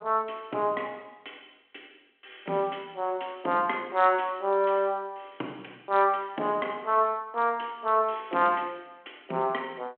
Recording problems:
telephone audio; 220 Hz to 3.2 kHz, G.726

